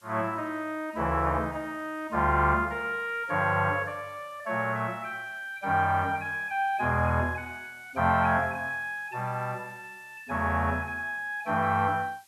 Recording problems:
background hiss; slope +1 dB per octave, SNR 30 dB

